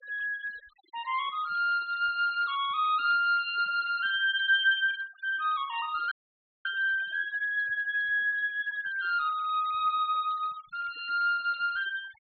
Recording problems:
low-pass filter; nothing above 4.2 kHz
noise reduction artefacts; signal-to-artefact ratio 24 dB
dropout; at 6 s for 0.5 s

